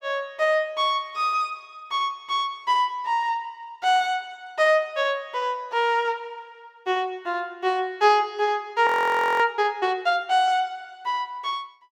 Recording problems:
audio freezing; at 9 s for 0.5 s

